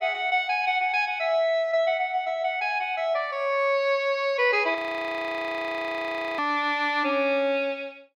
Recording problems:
audio freezing; at 5 s for 1.5 s

